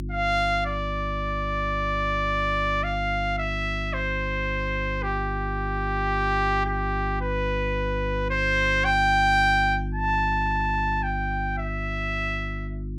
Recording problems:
hum; 50 Hz, harmonics up to 350 Hz, SNR 6 dB

